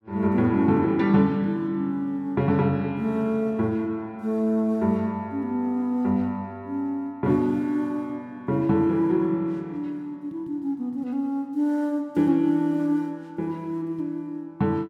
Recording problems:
none

